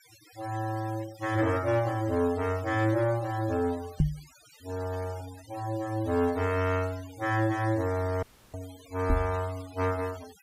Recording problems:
denoising artefacts; signal-to-artefact ratio 19 dB
knock on the microphone; at 4 s and at 9 s; peak +8 dB vs average level
dropout; at 8 s

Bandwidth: 15.5 kHz